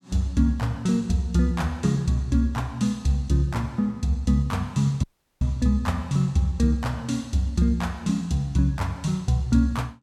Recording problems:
audio cutting out; at 5 s

